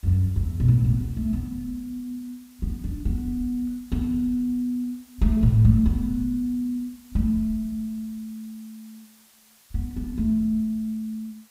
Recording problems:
hiss; slope +1 dB per octave, SNR 28 dB

